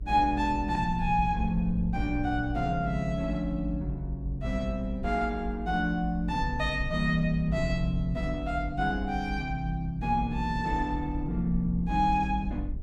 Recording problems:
low-frequency rumble; below 62 Hz, strongest tone 52 Hz, SNR 7 dB

